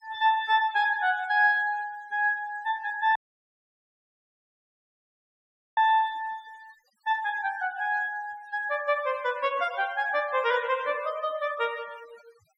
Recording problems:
noise reduction artefacts; signal-to-artefact ratio 23 dB
dropout; at 3 s for 2.5 s

